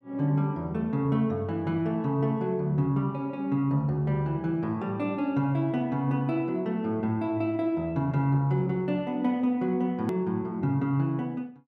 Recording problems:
edit click; at 10 s

